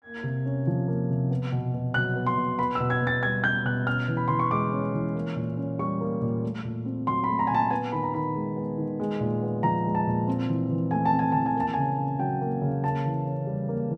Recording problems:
none

